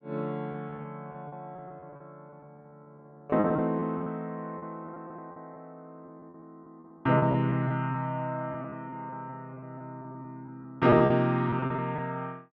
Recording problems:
lost packets; 13% of the sound replaced, filled with repeated pitch periods

